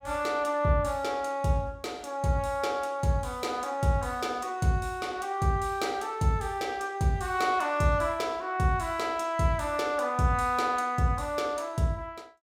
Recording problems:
none

